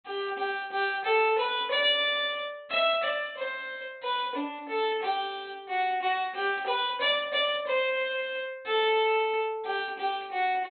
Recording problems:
low-pass filter; nothing above 4 kHz

